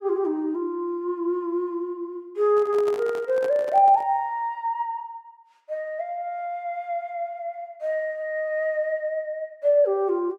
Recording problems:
handling noise; from 2.5 to 4 s; peak -7 dB vs average level

